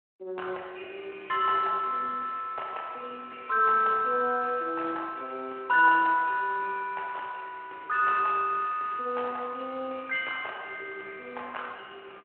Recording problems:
telephone audio; 280 Hz to 3.3 kHz, Speex

